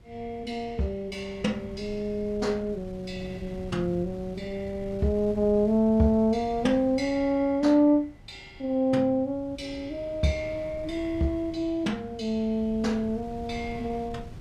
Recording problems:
wind on the microphone; below 180 Hz, SNR 17 dB

